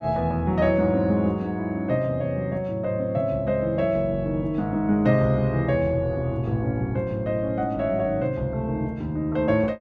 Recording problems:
none

